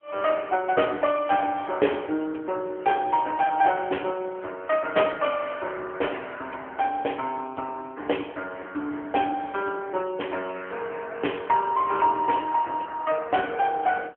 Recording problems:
telephone audio; 260 Hz to 3.3 kHz, AMR-NB

